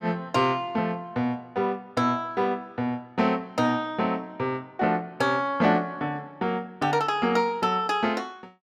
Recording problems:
none

